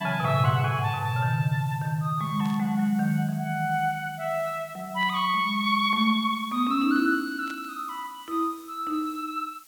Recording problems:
background hiss; slope +2 dB per octave, SNR 23 dB
static burst; at 2.5 s, at 5 s and at 7.5 s; peak -14 dB vs average level

